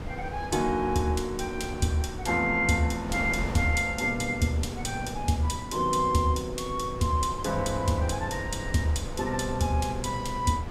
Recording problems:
wind on the microphone; below 350 Hz, SNR 10 dB

